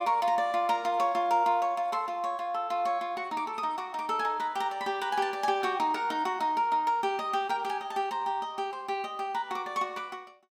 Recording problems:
none

